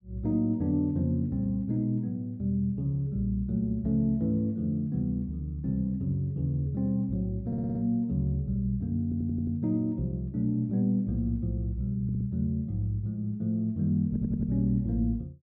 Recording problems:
audio stuttering; 4 times, first at 7.5 s

